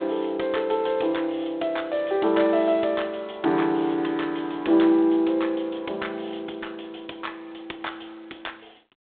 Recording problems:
telephone audio; 240 Hz to 3.7 kHz, G.726

